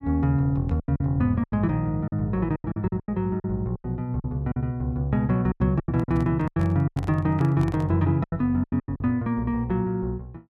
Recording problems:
lost packets; 13% of the sound replaced, filled with silence
handling noise; from 6 to 8 s; peak -8 dB vs average level

